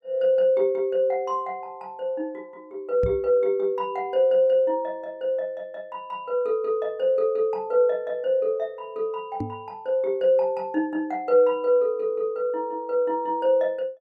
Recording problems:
microphone bump; at 3 s and at 9.5 s; peak -2 dB vs average level

